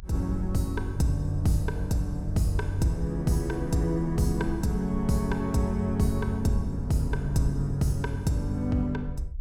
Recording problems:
low-frequency rumble; below 62 Hz, SNR 11 dB

